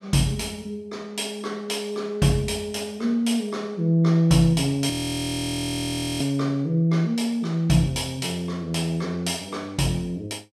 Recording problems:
audio freezing; at 5 s for 1.5 s

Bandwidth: 14.5 kHz